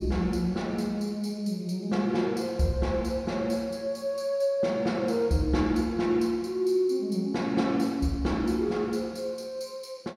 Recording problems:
none

